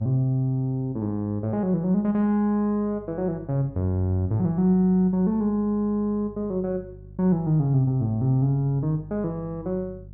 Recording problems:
hum; 50 Hz, harmonics up to 350 Hz, SNR 21 dB

